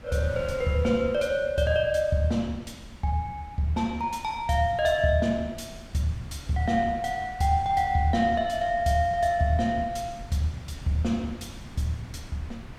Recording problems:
wind noise; below 280 Hz, SNR 17 dB

